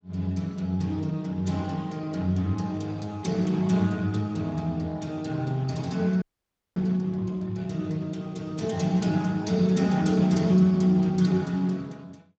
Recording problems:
lossy compression; Speex, log-spectral distance 3 dB
audio freezing; at 6 s for 0.5 s

